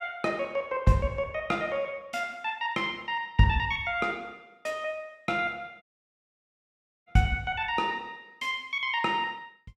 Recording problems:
audio cutting out; at 6 s for 1 s

